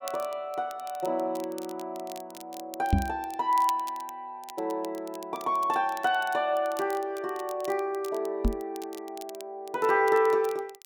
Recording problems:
crackling; vinyl, SNR 19 dB
microphone bump; at 3 s and at 8.5 s; peak +9 dB vs average level

